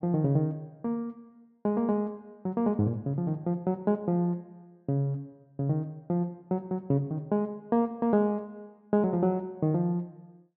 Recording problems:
none

